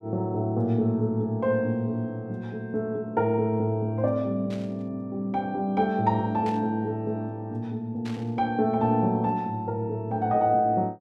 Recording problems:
burst of static; at 4.5 s, at 6.5 s and at 8 s; peak -12 dB vs average level

